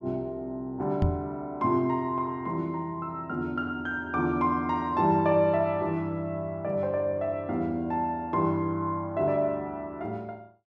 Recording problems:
microphone thump; at 1 s; peak +6 dB vs average level

